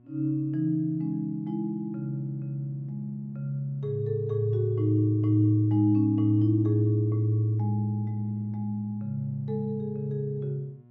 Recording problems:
electrical hum; 60 Hz, harmonics up to 720 Hz, SNR 27 dB

